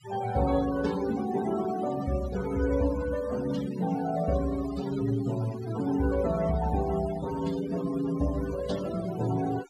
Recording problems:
denoising artefacts; signal-to-artefact ratio 14 dB

